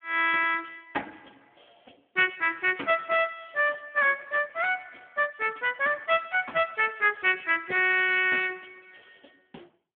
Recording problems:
telephone audio; 280 Hz to 3.3 kHz, Speex

